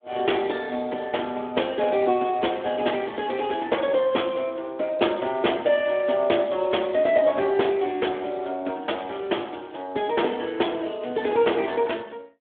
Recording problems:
telephone audio; 220 Hz to 3.5 kHz, Speex

